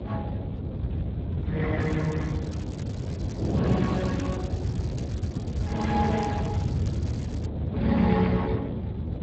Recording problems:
lossy compression; Speex, log-spectral distance 3 dB
rumble; below 150 Hz, SNR 3 dB
wind on the microphone; below 410 Hz, SNR 6 dB
crackle; from 2 to 7.5 s; loose cable, SNR 19 dB

